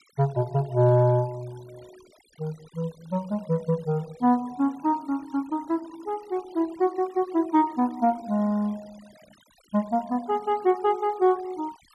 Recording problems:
noise reduction artefacts; signal-to-artefact ratio 26 dB

